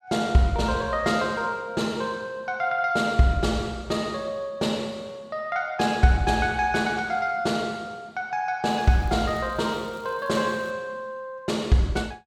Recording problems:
crackle; from 8.5 to 11 s; loose cable, SNR 30 dB

